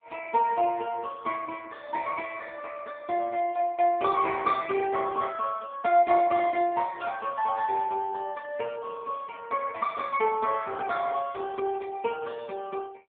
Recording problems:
telephone audio; 260 Hz to 2.7 kHz, AMR-NB

